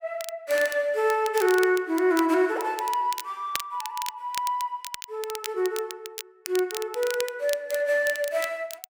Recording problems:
crackling; vinyl, SNR 12 dB

